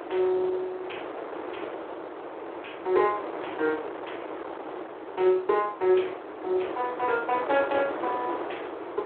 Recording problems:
telephone audio; 280 Hz to 3.4 kHz, Speex
wind noise; below 990 Hz, SNR 9 dB

